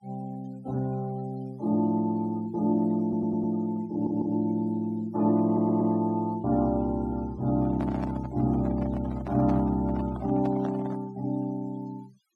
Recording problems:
denoising artefacts; signal-to-artefact ratio 25 dB
audio stuttering; at 3 s, at 4 s and at 5.5 s
handling noise; from 7.5 to 11 s; peak -5 dB vs average level

